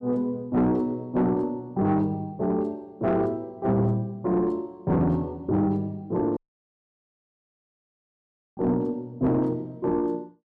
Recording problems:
distortion; soft clipping, signal-to-distortion ratio 11 dB
audio cutting out; at 6.5 s for 2 s

